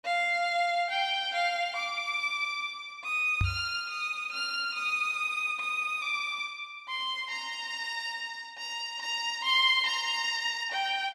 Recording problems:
knock on the microphone; at 3.5 s; peak +3 dB vs average level

